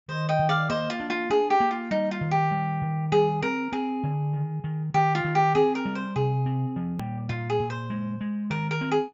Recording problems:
low-pass filter; nothing above 7.4 kHz
edit click; at 7 s

